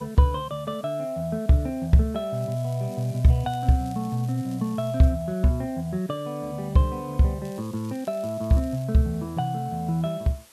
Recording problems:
background hiss; slope 0 dB per octave, SNR 26 dB
crackling; from 2.5 to 5 s and from 7.5 to 9 s; loose cable, SNR 26 dB

